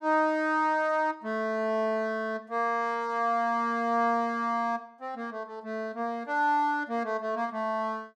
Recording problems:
none

